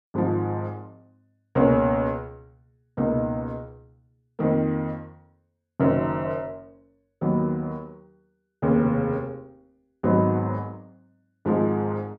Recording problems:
none

